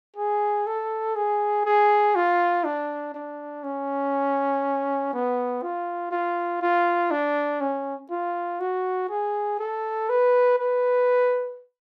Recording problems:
none

